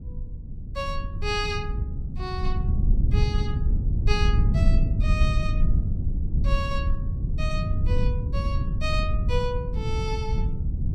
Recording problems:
rumble; below 98 Hz, SNR -6 dB

